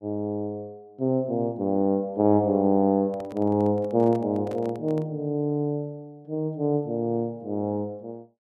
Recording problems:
microphone handling noise; from 3 to 5 s; peak -11 dB vs average level

